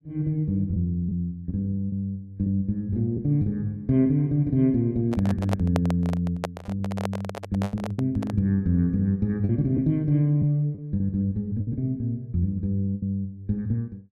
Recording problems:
lost packets; 4% of the sound replaced, filled with the last packet
microphone handling noise; from 5 to 8.5 s; peak +1 dB vs average level

